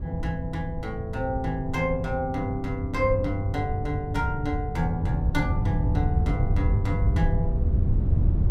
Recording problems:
wind noise; below 110 Hz, SNR -1 dB

